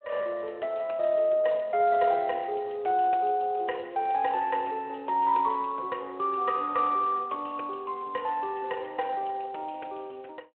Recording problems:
telephone audio; 340 Hz to 3.3 kHz, Speex

